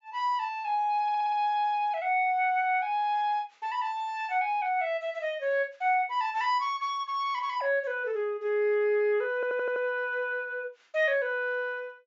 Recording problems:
low-pass filter; nothing above 7.4 kHz
audio stuttering; at 1 s and at 9.5 s

